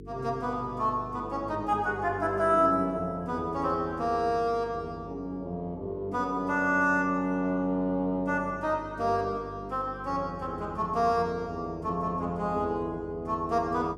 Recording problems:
electrical hum; 50 Hz, harmonics up to 450 Hz, SNR 16 dB

